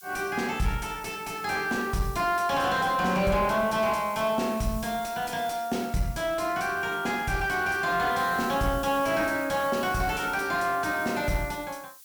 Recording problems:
distorted audio; soft clipping, signal-to-distortion ratio 9 dB
hiss; slope +7 dB per octave, SNR 18 dB

